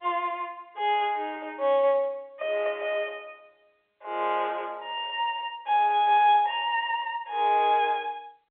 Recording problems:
phone line; 370 Hz to 3.7 kHz, G.711

